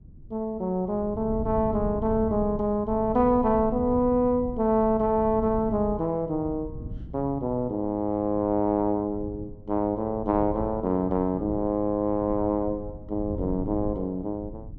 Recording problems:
wind on the microphone; below 160 Hz, SNR 13 dB

